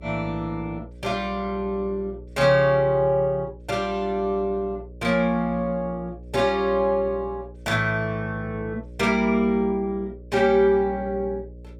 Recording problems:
hum; 60 Hz, harmonics up to 600 Hz, SNR 18 dB

